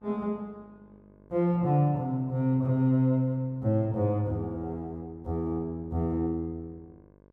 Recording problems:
mains hum; 50 Hz, harmonics up to 1.2 kHz, SNR 28 dB

